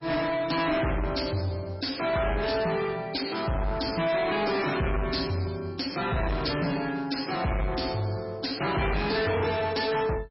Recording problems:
lossy compression; MP3, log-spectral distance 7 dB, nothing above 5.3 kHz
distorted audio; soft clipping, signal-to-distortion ratio 7 dB

